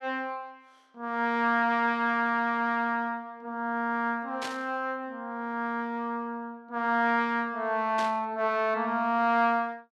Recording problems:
static burst; at 4.5 s and at 8 s; peak -4 dB vs average level

